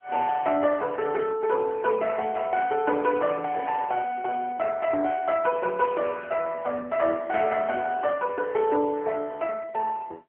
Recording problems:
phone line; 300 Hz to 3 kHz, AMR-NB

